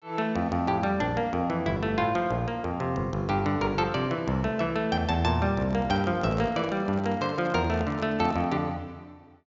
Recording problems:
treble cut off; nothing above 7.3 kHz
handling noise; from 5.5 to 8.5 s; peak -7 dB vs average level

